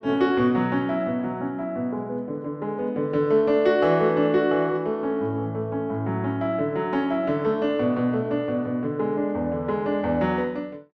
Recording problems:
none

